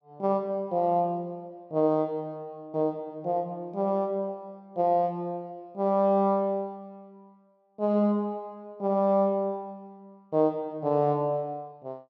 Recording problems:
none

